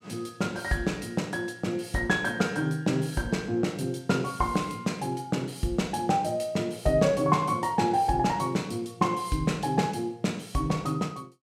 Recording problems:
none

